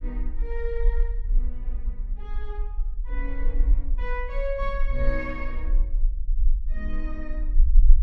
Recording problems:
low-frequency rumble; below 40 Hz, strongest tone 24 Hz, SNR -7 dB

